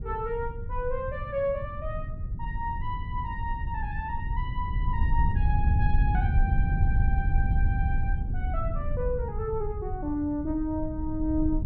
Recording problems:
rumble; below 94 Hz, SNR -3 dB

